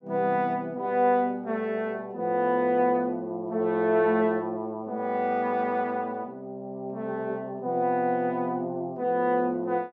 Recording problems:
none

